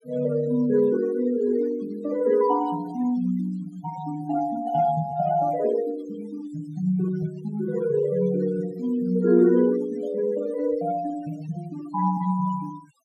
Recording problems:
denoising artefacts; signal-to-artefact ratio 19 dB

